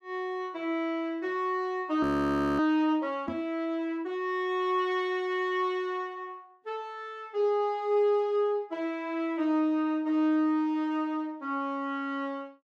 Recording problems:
audio freezing; at 2 s for 0.5 s
knock on the microphone; at 3.5 s; peak -3 dB vs average level

